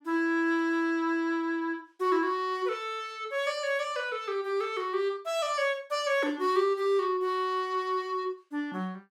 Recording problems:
none

